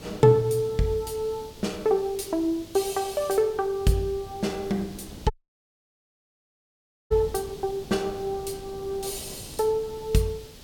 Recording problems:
background hiss; slope +3 dB per octave, SNR 22 dB
wind on the microphone; below 370 Hz, SNR 19 dB
audio cutting out; at 5.5 s for 2 s

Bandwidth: 17 kHz